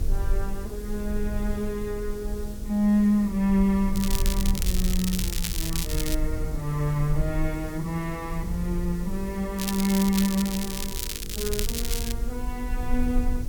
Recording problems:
electrical hum; 50 Hz, harmonics up to 500 Hz, SNR 17 dB
hiss; SNR 19 dB
rumble; below 56 Hz, SNR 6 dB
crackling; from 4 to 6 s and from 9.5 to 12 s; loose cable, SNR 4 dB

